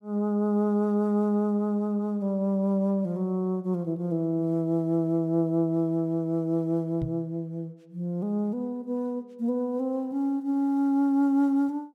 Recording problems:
microphone thump; at 7 s; peak -2 dB vs average level

